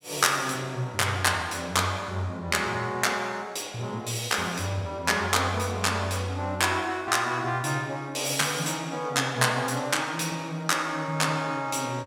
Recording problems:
none

